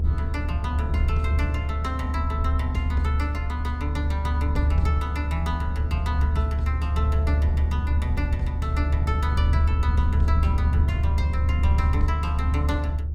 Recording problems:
rumble; below 76 Hz, strongest tone 74 Hz, SNR -7 dB

